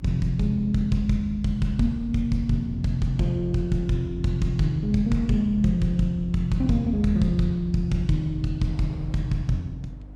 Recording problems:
hum; 50 Hz, harmonics up to 300 Hz, SNR 19 dB
wind on the microphone; below 580 Hz, SNR 29 dB

